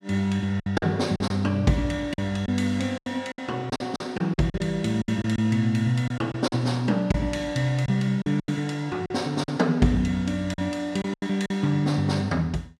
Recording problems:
packet loss; 9% of the sound replaced, filled with silence

